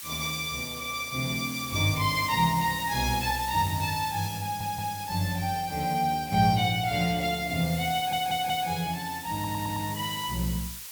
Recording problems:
hiss; slope +3 dB per octave, SNR 11 dB
stutter; at 4.5 s, at 8 s and at 9.5 s

